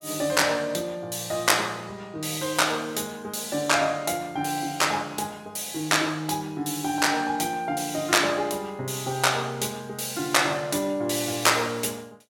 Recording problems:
none

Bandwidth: 17.5 kHz